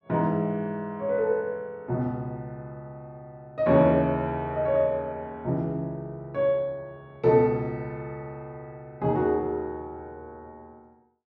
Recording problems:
none

